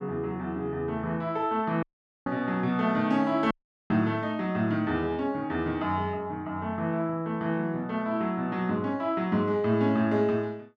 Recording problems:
audio cutting out; at 2 s and at 3.5 s

